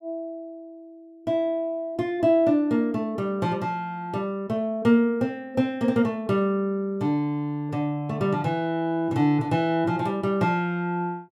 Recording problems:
none

